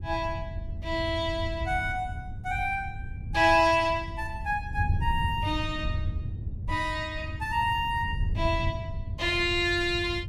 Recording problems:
wind on the microphone; below 110 Hz, SNR 7 dB

